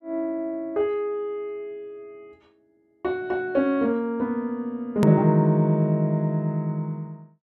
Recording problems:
edit click; at 5 s

